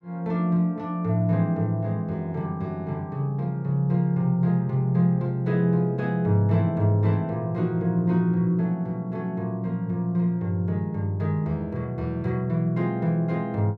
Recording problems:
none

